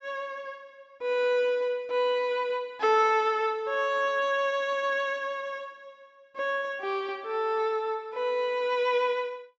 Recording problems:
low-pass filter; nothing above 8 kHz

